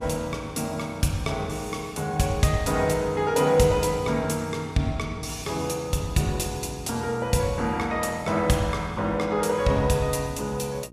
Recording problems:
hum; 60 Hz, harmonics up to 960 Hz, SNR 22 dB

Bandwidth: 14.5 kHz